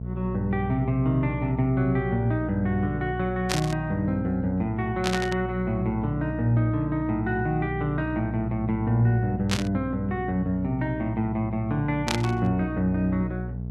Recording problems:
electrical hum; 60 Hz, harmonics up to 480 Hz, SNR 7 dB
static burst; 4 times, first at 3.5 s; peak +3 dB vs average level

